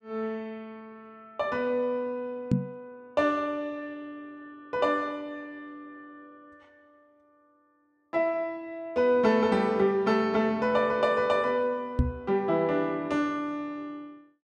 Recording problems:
microphone bump; at 2.5 s and at 12 s; peak +7 dB vs average level

